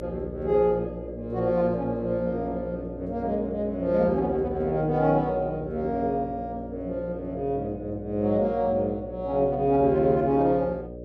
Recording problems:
electrical hum; 60 Hz, harmonics up to 600 Hz, SNR 12 dB

